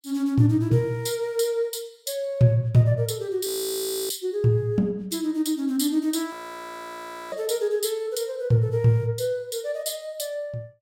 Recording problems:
frozen audio; at 3.5 s for 0.5 s and at 6.5 s for 1 s

